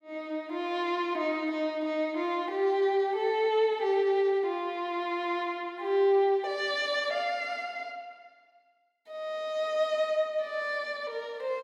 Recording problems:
none

